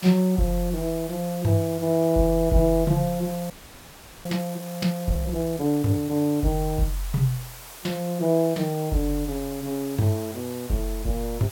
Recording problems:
background hiss; SNR 15 dB
audio freezing; at 3.5 s for 1 s

